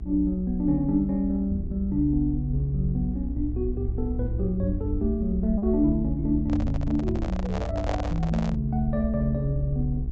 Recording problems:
treble cut off; nothing above 8 kHz
electrical hum; 60 Hz, harmonics up to 780 Hz, SNR 15 dB
low-frequency rumble; below 64 Hz, SNR 6 dB
lost packets; 0.4% of the sound replaced, filled with repeated pitch periods
microphone handling noise; from 6.5 to 8.5 s; peak 0 dB vs average level

